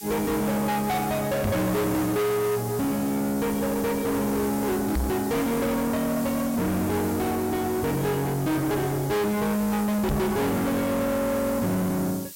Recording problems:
distorted audio; soft clipping, signal-to-distortion ratio 6 dB
hiss; slope +6 dB per octave, SNR 13 dB
microphone thump; at 1.5 s, at 5 s and at 10 s; peak +4 dB vs average level

